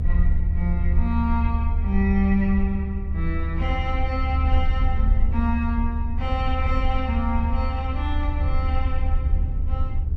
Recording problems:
rumble; below 74 Hz, SNR -3 dB

